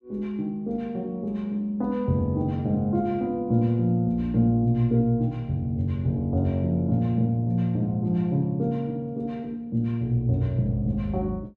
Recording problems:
none

